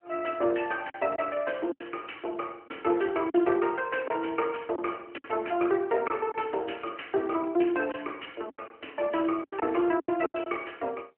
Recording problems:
phone line; 240 Hz to 3 kHz, AMR-NB
packet loss; 7% of the sound replaced, filled with silence

